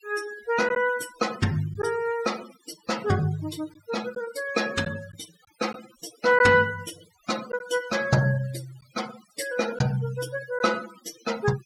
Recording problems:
noise reduction artefacts; signal-to-artefact ratio 16 dB
lost packets; 1.5% of the sound replaced, filled with silence

